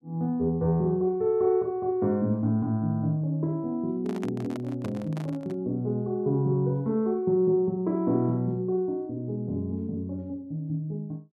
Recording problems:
microphone handling noise; from 4 to 5.5 s; peak -8 dB vs average level

